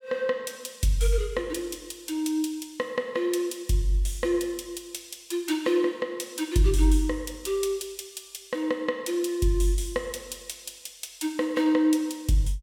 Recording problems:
none

